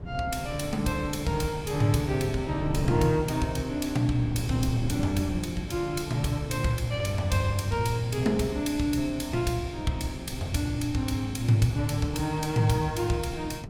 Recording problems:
wind noise; below 220 Hz, SNR 11 dB

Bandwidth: 17 kHz